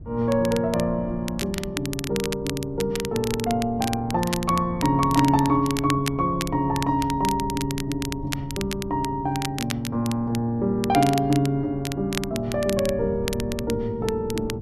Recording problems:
wind noise; below 180 Hz, SNR 14 dB
crackle; vinyl, SNR 10 dB

